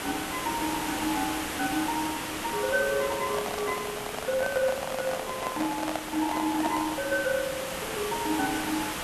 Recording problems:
background hiss; slope -3 dB per octave, SNR 3 dB
microphone handling noise; from 3 to 7 s; peak +3 dB vs average level

